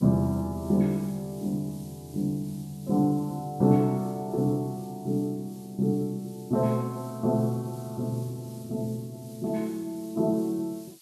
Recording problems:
background hiss; slope +4 dB per octave, SNR 23 dB

